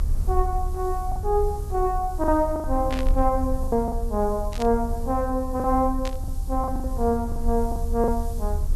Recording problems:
background hiss; SNR 23 dB
low-frequency rumble; below 72 Hz, strongest tone 24 Hz, SNR 5 dB
lost packets; 7% of the sound replaced, filled with the last packet
static burst; at 3 s, at 4.5 s and at 6 s; peak -4 dB vs average level

